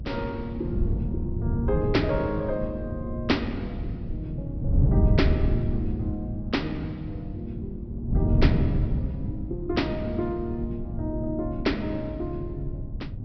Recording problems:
treble missing; nothing above 5.5 kHz
hum; 50 Hz, harmonics up to 300 Hz, SNR 12 dB
wind on the microphone; below 140 Hz, SNR -1 dB

